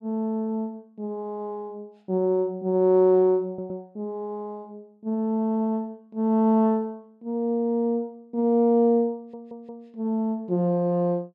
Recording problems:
stutter; at 3.5 s and at 9 s

